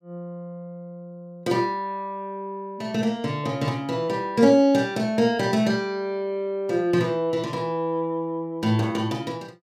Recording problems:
none

